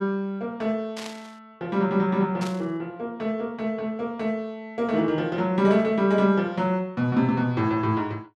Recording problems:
static burst; at 1 s and at 2.5 s; peak -8 dB vs average level

